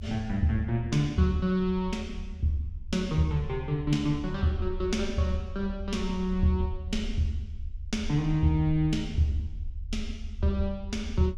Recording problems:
low-frequency rumble; below 74 Hz, SNR 11 dB

